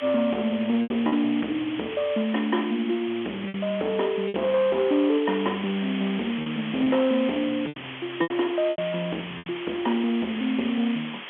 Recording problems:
telephone audio; 190 Hz to 3.7 kHz, G.711
distorted audio; soft clipping, signal-to-distortion ratio 11 dB
background hiss; SNR 11 dB
lost packets; 6% of the sound replaced, filled with repeated pitch periods

